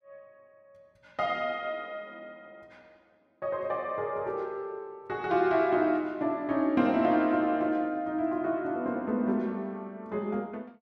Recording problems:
none

